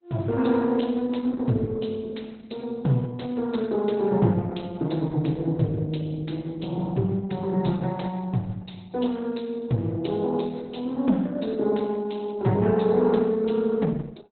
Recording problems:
codec artefacts; Opus, log-spectral distance 4 dB, nothing above 4.1 kHz

